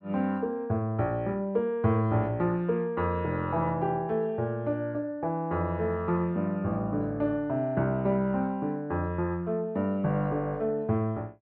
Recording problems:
none

